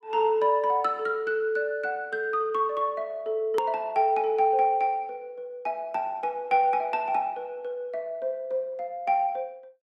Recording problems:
click at an edit; at 3.5 s

